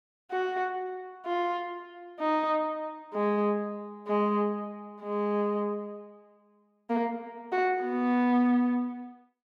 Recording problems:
none

